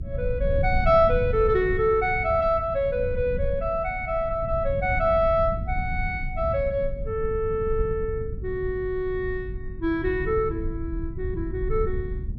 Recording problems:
low-frequency rumble; below 98 Hz, SNR 7 dB

